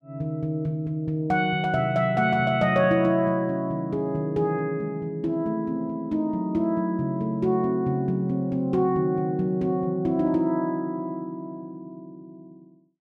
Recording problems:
none

